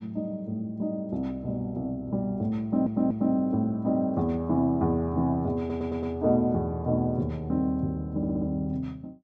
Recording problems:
low-pass filter; nothing above 8 kHz
audio stuttering; at 2.5 s, at 5.5 s and at 8 s

